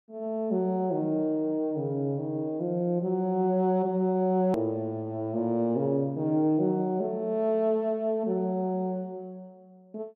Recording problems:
click at an edit; at 4.5 s

